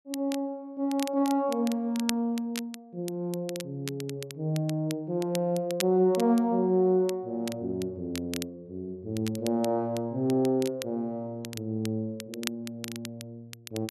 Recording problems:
crackle; vinyl, SNR 13 dB

